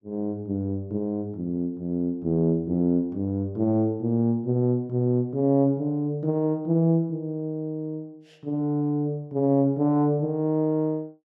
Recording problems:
none

